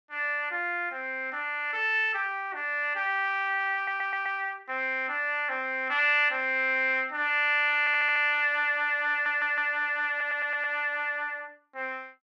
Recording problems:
audio stuttering; 4 times, first at 4 s

